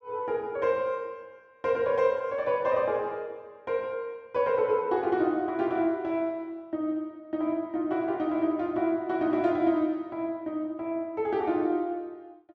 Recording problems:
none

